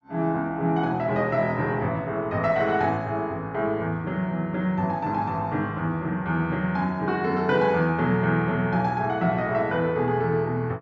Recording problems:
low-pass filter; nothing above 8 kHz

